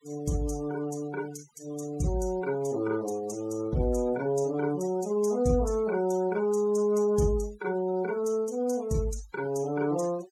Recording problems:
denoising artefacts; signal-to-artefact ratio 20 dB

